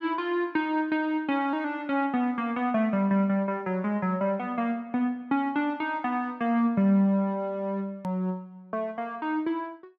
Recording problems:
edit click; at 8 s

